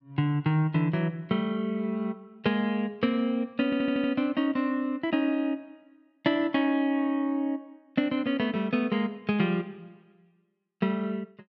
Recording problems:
stutter; at 3.5 s

